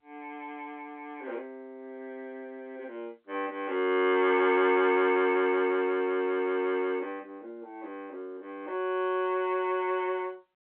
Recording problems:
telephone audio; 300 Hz to 3.4 kHz, G.711

